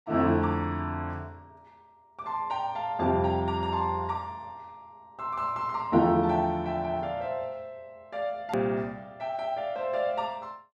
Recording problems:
edit click; at 8.5 s

